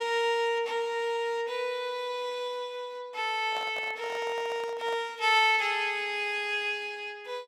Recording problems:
microphone handling noise; from 3.5 to 5 s; peak -8 dB vs average level

